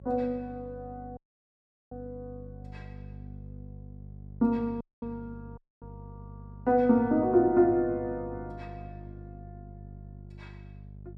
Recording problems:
hum; 50 Hz, harmonics up to 450 Hz, SNR 18 dB
dropout; at 1 s for 0.5 s, at 5 s and at 5.5 s

